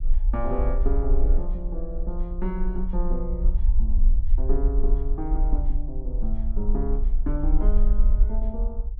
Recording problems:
rumble; below 42 Hz, strongest tone 20 Hz, SNR -7 dB

